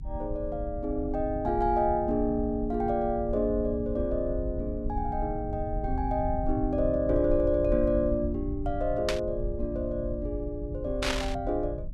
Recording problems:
rumble; below 88 Hz, SNR 7 dB
static burst; at 9 s and at 11 s; peak +3 dB vs average level

